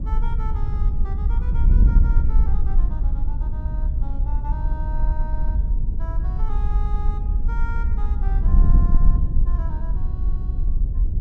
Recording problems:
wind noise; below 58 Hz, SNR -17 dB

